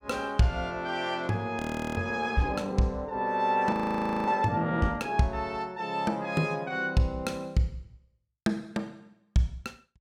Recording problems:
frozen audio; at 1.5 s and at 3.5 s for 0.5 s

